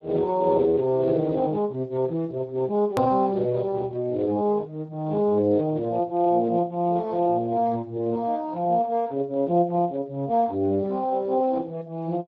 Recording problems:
codec artefacts; Speex, log-spectral distance 2 dB, nothing above 13.3 kHz
click at an edit; at 3 s

